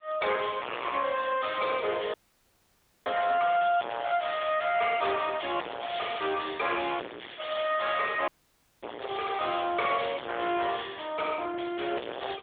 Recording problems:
phone line; 370 Hz to 3.5 kHz, AMR-NB
distorted audio; hard clipping, uneven, signal-to-distortion ratio 2 dB
dropout; at 2 s for 1 s and at 8.5 s for 0.5 s

